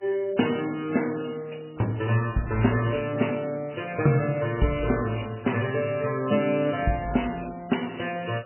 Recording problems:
lossy compression; MP3, log-spectral distance 6 dB, nothing above 3 kHz

